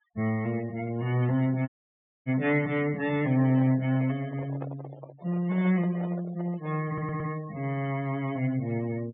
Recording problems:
low-pass filter; nothing above 4 kHz
noise reduction artefacts; signal-to-artefact ratio 21 dB
audio cutting out; at 1.5 s for 0.5 s
handling noise; from 3 to 7.5 s; peak -7 dB vs average level
stutter; at 7 s

